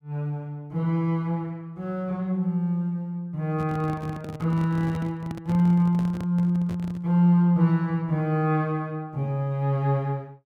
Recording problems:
microphone handling noise; from 3.5 to 7 s; peak -5 dB vs average level

